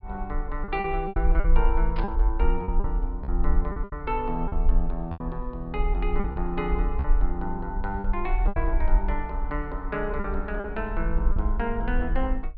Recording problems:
low-pass filter; nothing above 5.5 kHz
rumble; below 46 Hz, SNR -2 dB
lost packets; 8% of the sound replaced, filled with repeated pitch periods
static burst; at 2 s; peak -4 dB vs average level

